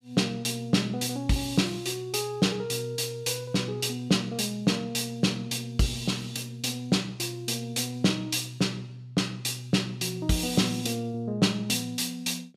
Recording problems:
none

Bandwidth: 14.5 kHz